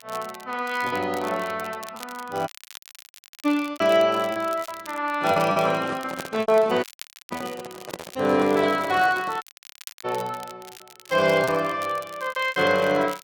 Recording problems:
lossy codec; AAC, log-spectral distance 2 dB
crackling; vinyl, SNR 19 dB
lost packets; 6% of the sound replaced, filled with repeated pitch periods
dropout; at 2.5 s for 1 s, at 7 s and at 9.5 s for 0.5 s
microphone handling noise; from 5.5 to 9.5 s; peak -4 dB vs average level

